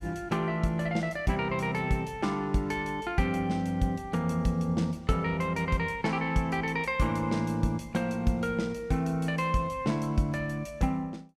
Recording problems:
none

